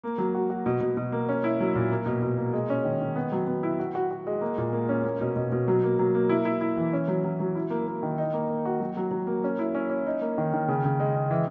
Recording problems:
low-pass filter; nothing above 8 kHz

